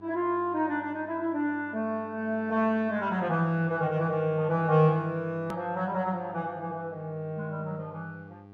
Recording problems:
hum; 50 Hz, harmonics up to 1.6 kHz, SNR 22 dB
edit click; at 5.5 s

